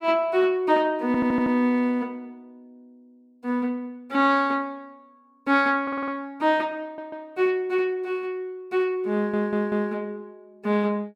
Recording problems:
stutter; 4 times, first at 1 s

